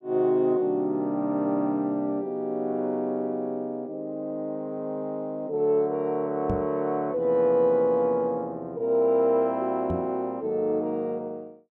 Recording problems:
microphone thump; at 6.5 s and at 10 s; peak -1 dB vs average level

